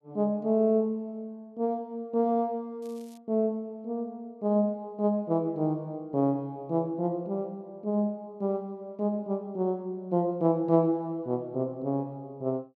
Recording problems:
crackle; at 3 s; loose cable, SNR 29 dB

